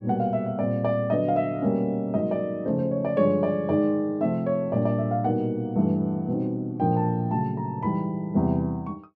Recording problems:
none

